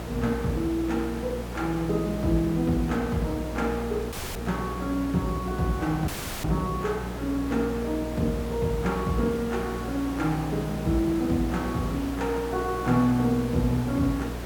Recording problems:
electrical hum; 60 Hz, harmonics up to 480 Hz, SNR 10 dB
hiss; slope -6 dB per octave, SNR 11 dB
audio cutting out; at 4 s and at 6 s

